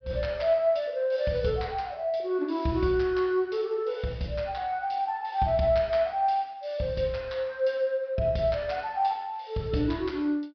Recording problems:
treble missing; nothing above 5.5 kHz

